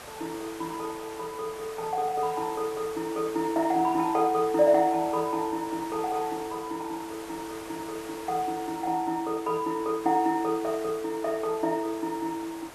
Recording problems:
hiss; SNR 14 dB

